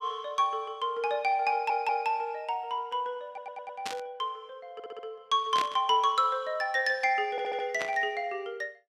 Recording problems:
stutter; 4 times, first at 1.5 s
burst of static; at 4 s, at 5.5 s and at 8 s; peak -1 dB vs average level

